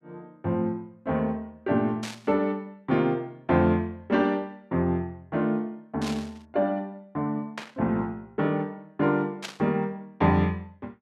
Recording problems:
static burst; 4 times, first at 2 s; peak -2 dB vs average level

